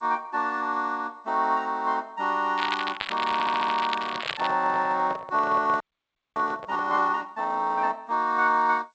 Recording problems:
codec artefacts; G.722, log-spectral distance 4 dB
crackling; from 2.5 to 4.5 s; loose cable, SNR 7 dB
audio stuttering; at 3.5 s
microphone handling noise; from 4 to 7 s; peak -8 dB vs average level
frozen audio; at 6 s for 0.5 s

